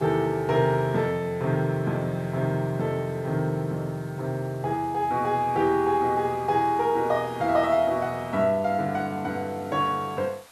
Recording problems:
hiss; SNR 26 dB

